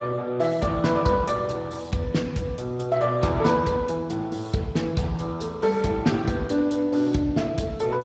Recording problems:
lossy codec; Speex, log-spectral distance 4 dB, nothing above 7.6 kHz

